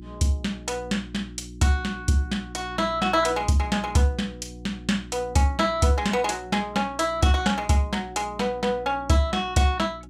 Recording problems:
hum; 60 Hz, harmonics up to 360 Hz, SNR 18 dB

